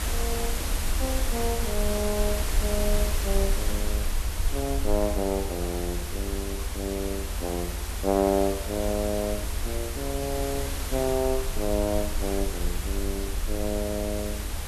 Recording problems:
background hiss; slope -3 dB per octave, SNR 4 dB
rumble; below 62 Hz, SNR 3 dB

